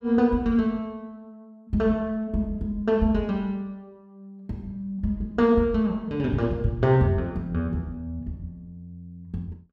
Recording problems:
none

